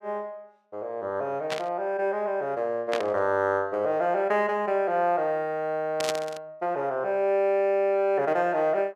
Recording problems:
burst of static; at 1.5 s, at 3 s and at 6 s; peak +1 dB vs average level

